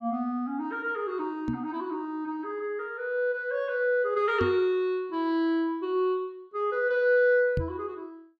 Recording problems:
knock on the microphone; at 1.5 s, at 4.5 s and at 7.5 s; peak +1 dB vs average level

